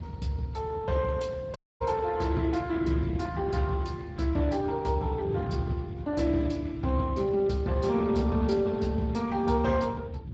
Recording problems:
lossy compression; Speex, log-spectral distance 3 dB
rumble; below 160 Hz, SNR 13 dB
wind on the microphone; below 230 Hz, SNR 13 dB
audio cutting out; at 1.5 s

